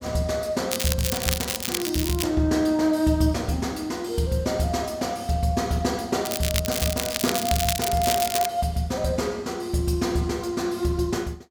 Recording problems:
crackling; from 0.5 to 2 s and from 6.5 to 8.5 s; loose cable, SNR 2 dB

